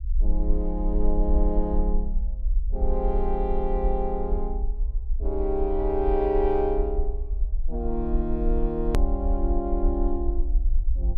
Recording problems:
low-frequency rumble; below 46 Hz, strongest tone 22 Hz, SNR 0 dB
edit click; at 9 s

